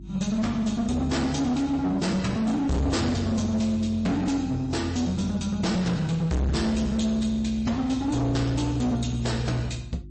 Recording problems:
codec artefacts; MP3, log-spectral distance 3 dB, nothing above 8.2 kHz
distortion; hard clipping, uneven, signal-to-distortion ratio 6 dB
mains hum; 50 Hz, harmonics up to 350 Hz, SNR 19 dB

